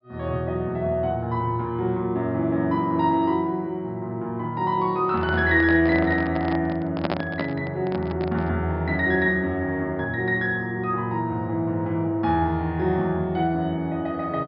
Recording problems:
treble missing; nothing above 5.5 kHz
handling noise; from 5 to 8.5 s; peak +2 dB vs average level

